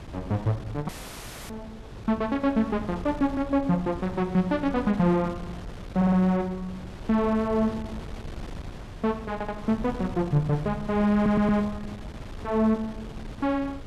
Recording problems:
wind noise; below 320 Hz, SNR 14 dB
dropout; at 1 s for 0.5 s
stutter; at 6 s, at 9.5 s and at 11 s

